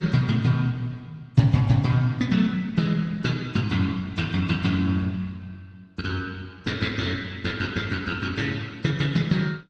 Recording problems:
codec artefacts; Opus, then AAC, log-spectral distance 3 dB, nothing above 11.6 kHz

